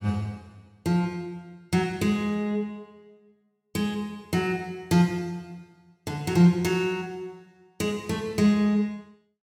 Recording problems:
none

